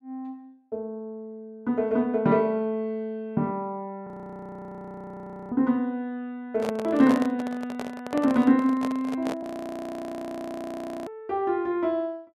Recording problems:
audio freezing; at 4 s for 1.5 s and at 9.5 s for 1.5 s
microphone handling noise; from 6.5 to 9.5 s; peak -1 dB vs average level

